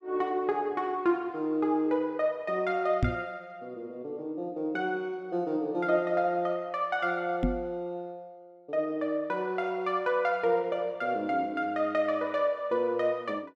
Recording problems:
microphone thump; at 3 s and at 7.5 s; peak +6 dB vs average level

